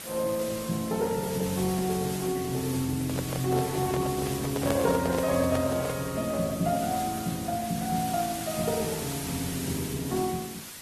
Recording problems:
codec artefacts; Vorbis, then Opus, log-spectral distance 10 dB
hiss; slope 0 dB per octave, SNR 8 dB
microphone handling noise; from 3 to 6 s; peak +3 dB vs average level

